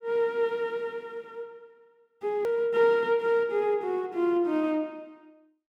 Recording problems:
hard cut with a click; at 2.5 s

